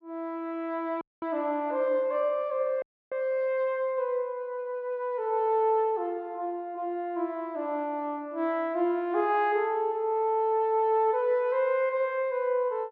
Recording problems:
dropout; at 1 s and at 3 s

